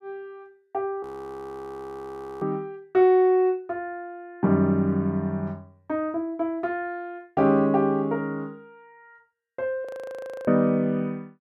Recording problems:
audio freezing; at 1 s for 1.5 s and at 10 s for 0.5 s

